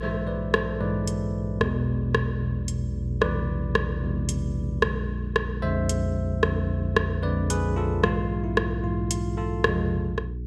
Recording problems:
electrical hum; 60 Hz, harmonics up to 420 Hz, SNR 7 dB

